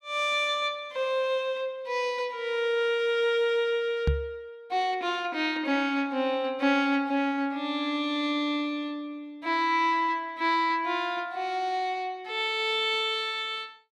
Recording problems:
microphone bump; at 4 s; peak +5 dB vs average level

